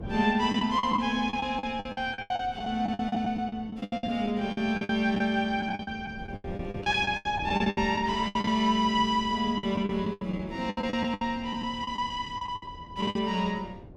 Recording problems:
wind on the microphone; below 290 Hz, SNR 17 dB
lost packets; 17% of the sound replaced, filled with the last packet

